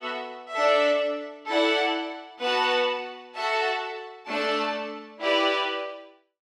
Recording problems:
none

